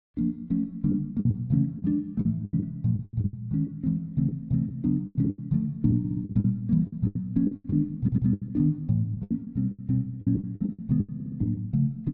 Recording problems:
lost packets; 15% of the sound replaced, filled with the last packet
audio stuttering; at 6 s, at 8 s and at 11 s

